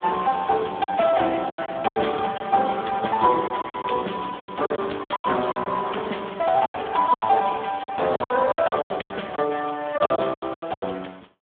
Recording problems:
telephone audio; 260 Hz to 3.5 kHz, Speex
packet loss; 14% of the sound replaced, filled with silence

